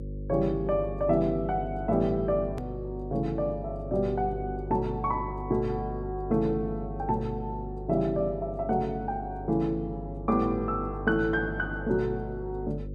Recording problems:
electrical hum; 50 Hz, harmonics up to 550 Hz, SNR 9 dB
edit click; at 2.5 s

